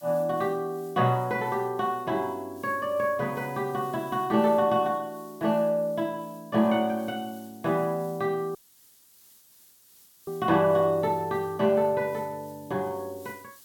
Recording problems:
hiss; SNR 25 dB
audio cutting out; at 8.5 s for 1.5 s

